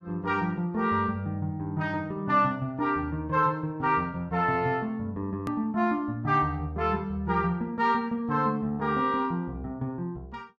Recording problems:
edit click; at 5.5 s

